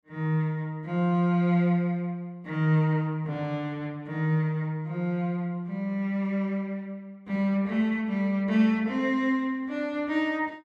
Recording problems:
none

